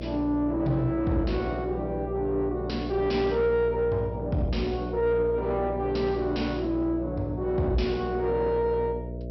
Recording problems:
treble cut off; nothing above 5.7 kHz
distorted audio; soft clipping, signal-to-distortion ratio 10 dB
hum; 60 Hz, harmonics up to 660 Hz, SNR 9 dB

